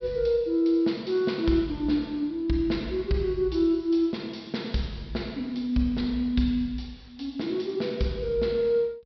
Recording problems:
low-pass filter; nothing above 5.5 kHz

